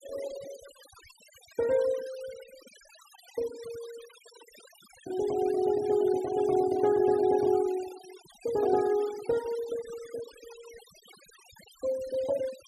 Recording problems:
denoising artefacts; signal-to-artefact ratio 20 dB

